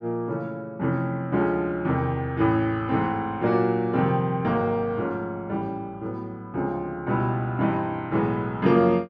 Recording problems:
none

